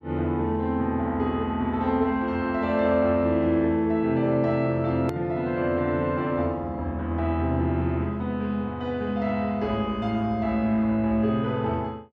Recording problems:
edit click; at 5 s

